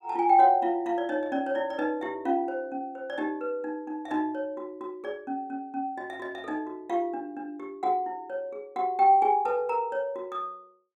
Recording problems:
none

